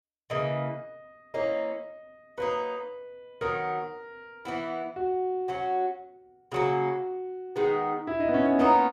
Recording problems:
none

